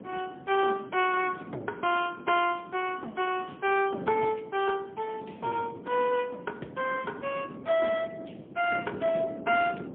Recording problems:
phone line; 260 Hz to 3.3 kHz, AMR-NB, then MP3
wind noise; below 440 Hz, SNR 14 dB

